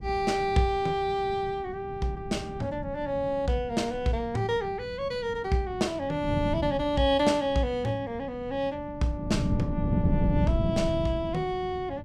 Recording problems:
wind on the microphone; below 200 Hz, SNR 6 dB

